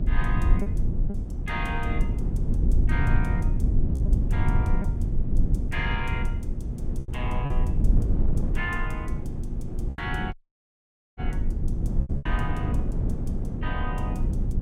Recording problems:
mains hum; 60 Hz, harmonics up to 840 Hz, SNR 10 dB
low-frequency rumble; below 80 Hz, SNR -6 dB
wind noise; below 220 Hz, SNR 2 dB
packet loss; 3% of the sound replaced, filled with repeated pitch periods
dropout; at 10 s for 1 s

